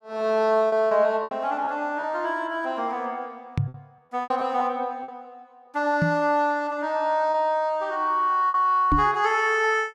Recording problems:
packet loss; 5% of the sound replaced, filled with repeated pitch periods
knock on the microphone; at 3.5 s, at 6 s and at 9 s; peak +3 dB vs average level

